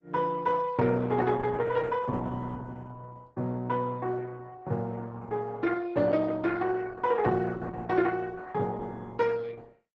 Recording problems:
lossy compression; Opus, log-spectral distance 3 dB

